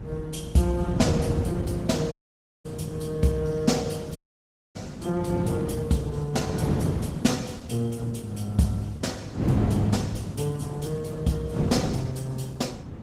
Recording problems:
lossy compression; Vorbis, then Opus, log-spectral distance 3 dB
wind on the microphone; below 240 Hz, SNR 2 dB
packet loss; 1.3% of the sound replaced, filled with repeated pitch periods
audio cutting out; at 2 s for 0.5 s and at 4 s for 0.5 s

